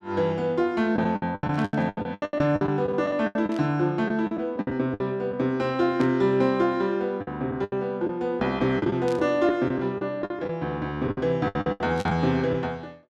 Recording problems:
packet loss; 14% of the sound replaced, filled with the last packet
static burst; 5 times, first at 1.5 s; peak -10 dB vs average level

